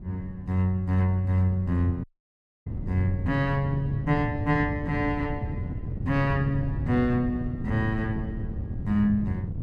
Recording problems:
wind noise; below 160 Hz, SNR 7 dB
dropout; at 2 s for 0.5 s

